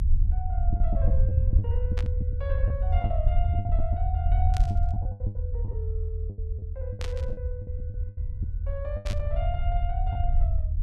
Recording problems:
rumble; below 80 Hz, SNR -10 dB
packet loss; 12% of the sound replaced, filled with the last packet
burst of static; 4 times, first at 2 s; peak +3 dB vs average level

